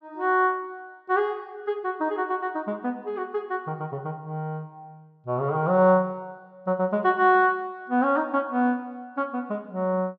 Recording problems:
none

